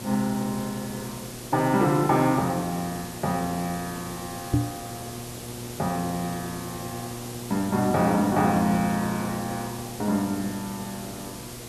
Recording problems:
hum; 60 Hz, harmonics up to 1.6 kHz, SNR 14 dB
hiss; SNR 12 dB
microphone thump; at 4.5 s; peak +6 dB vs average level

